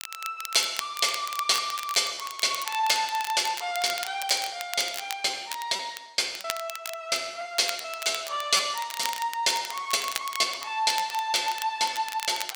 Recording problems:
crackle; vinyl, SNR 10 dB
packet loss; 8% of the sound replaced, filled with repeated pitch periods

